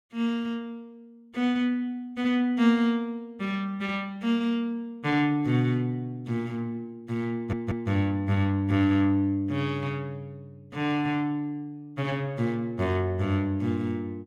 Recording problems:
stutter; at 7.5 s

